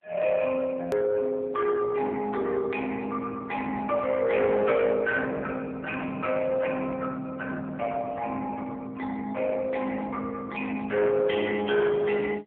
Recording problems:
phone line; 280 Hz to 3.2 kHz, AMR-NB
distortion; soft clipping, signal-to-distortion ratio 12 dB
hard cut with a click; at 1 s

